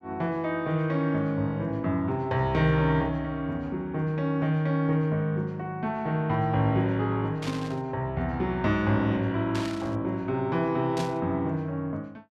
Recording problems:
static burst; at 7.5 s, at 9.5 s and at 11 s; peak -6 dB vs average level

